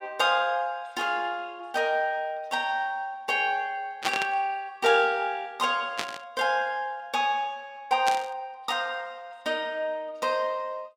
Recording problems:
static burst; at 4 s, at 6 s and at 8 s; peak +4 dB vs average level

